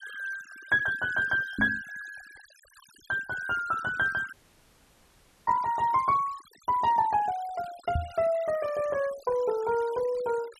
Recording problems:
noise reduction artefacts; signal-to-artefact ratio 20 dB
microphone thump; at 1.5 s and at 8 s; peak +2 dB vs average level
audio cutting out; at 4.5 s for 1 s

